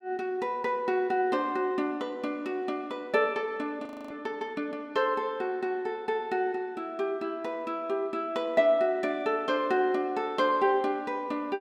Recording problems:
audio freezing; at 4 s

